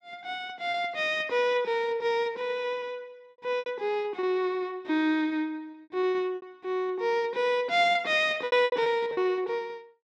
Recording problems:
packet loss; 8% of the sound replaced, filled with repeated pitch periods

